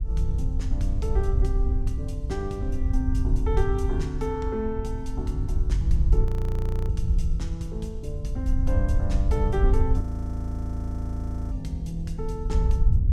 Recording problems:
low-frequency rumble; below 78 Hz, SNR -5 dB
audio freezing; at 6.5 s for 0.5 s and at 10 s for 1.5 s

